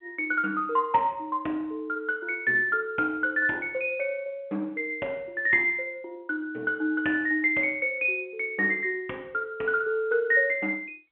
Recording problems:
phone line; 260 Hz to 3.4 kHz, G.711

